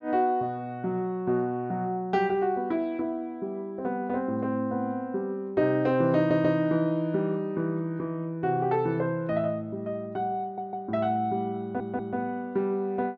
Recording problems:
audio stuttering; at 6 s, at 10 s and at 12 s

